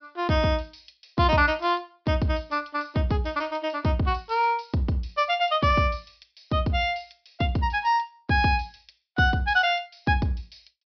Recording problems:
low-pass filter; nothing above 5.5 kHz

